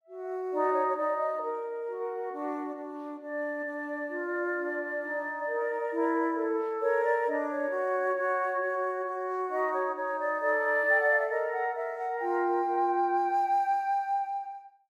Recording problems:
none

